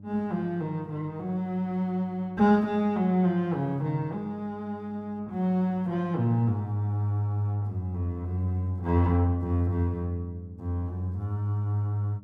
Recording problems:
hum; 50 Hz, harmonics up to 600 Hz, SNR 20 dB

